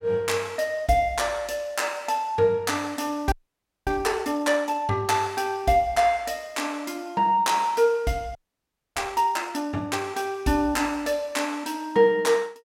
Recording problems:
audio freezing; at 3.5 s for 0.5 s and at 8.5 s for 0.5 s

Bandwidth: 16.5 kHz